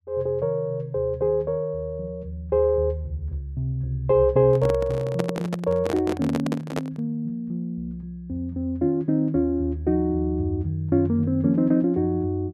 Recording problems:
handling noise; from 4.5 to 7 s; peak 0 dB vs average level

